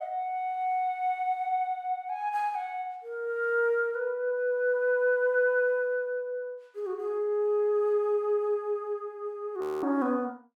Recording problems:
frozen audio; at 9.5 s

